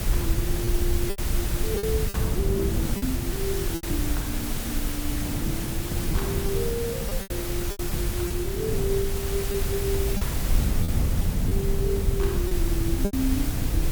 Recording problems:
hiss; slope -2 dB per octave, SNR 1 dB
low-frequency rumble; below 88 Hz, SNR -1 dB
wind noise; below 220 Hz, SNR 4 dB
lost packets; 6% of the sound replaced, filled with repeated pitch periods

